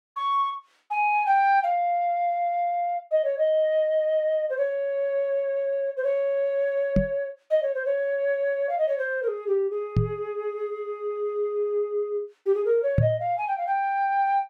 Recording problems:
microphone thump; at 7 s, at 10 s and at 13 s; peak +7 dB vs average level

